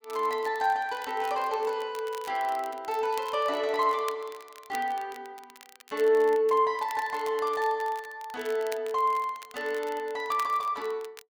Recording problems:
crackling; vinyl, SNR 20 dB

